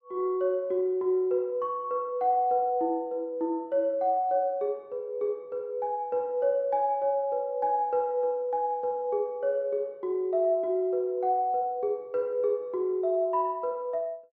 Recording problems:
none

